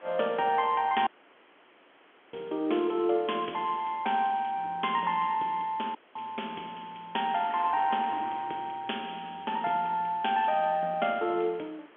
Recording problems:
telephone audio; 260 Hz to 3.4 kHz, G.711
wind on the microphone; below 2.3 kHz, SNR 22 dB
dropout; at 1 s for 1.5 s and at 6 s

